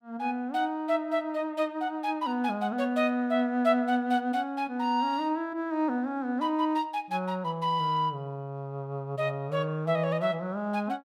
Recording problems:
none

